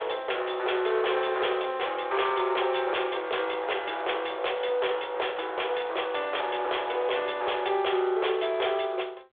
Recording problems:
telephone audio; 340 Hz to 3.6 kHz, G.726
distortion; hard clipping, signal-to-distortion ratio 10 dB

